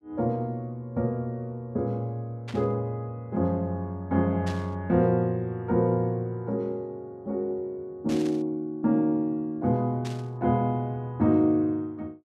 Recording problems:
static burst; 4 times, first at 2.5 s; peak -9 dB vs average level

